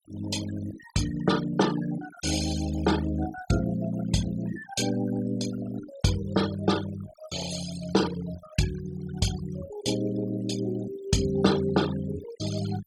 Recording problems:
denoising artefacts; signal-to-artefact ratio 11 dB

